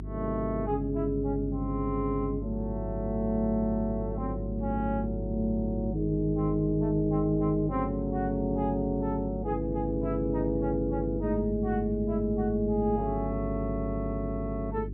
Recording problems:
electrical hum; 50 Hz, harmonics up to 400 Hz, SNR 6 dB

